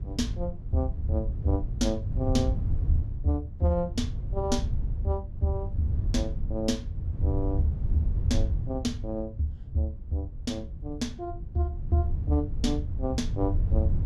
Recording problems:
low-frequency rumble; below 98 Hz, SNR 2 dB

